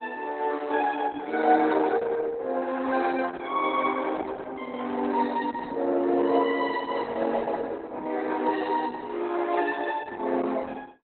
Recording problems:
lossy codec; Opus, log-spectral distance 4 dB, nothing above 4 kHz
microphone handling noise; from 4 to 7.5 s; peak -8 dB vs average level

